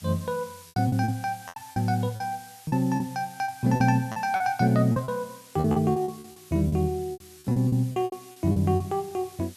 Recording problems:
hiss; slope +3 dB per octave, SNR 21 dB
lost packets; 14% of the sound replaced, filled with repeated pitch periods

